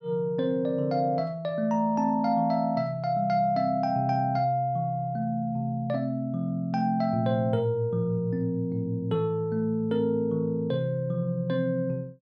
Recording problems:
none

